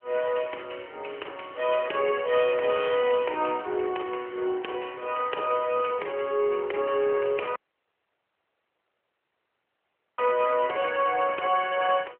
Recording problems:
telephone audio; 320 Hz to 3.1 kHz, AMR-NB
dropout; at 7.5 s for 2.5 s

